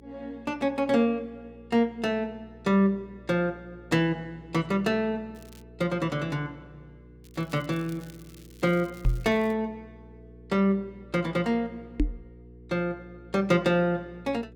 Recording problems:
electrical hum; 60 Hz, harmonics up to 480 Hz, SNR 23 dB
crackle; at 5.5 s and from 7 to 9.5 s; loose cable, SNR 26 dB
knock on the microphone; at 9 s and at 12 s; peak +6 dB vs average level

